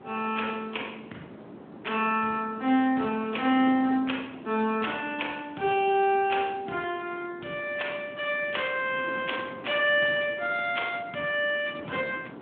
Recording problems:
phone line; 170 Hz to 3.5 kHz, Speex
wind on the microphone; below 640 Hz, SNR 17 dB

